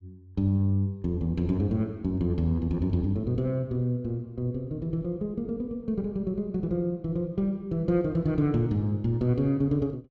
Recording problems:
none

